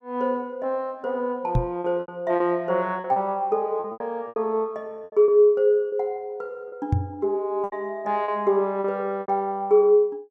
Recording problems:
packet loss; 9% of the sound replaced, filled with repeated pitch periods
knock on the microphone; at 1.5 s and at 7 s; peak +5 dB vs average level

